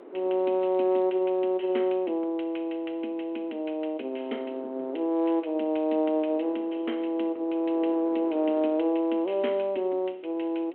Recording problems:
phone line; 240 Hz to 3.3 kHz, G.726
wind noise; below 570 Hz, SNR 22 dB

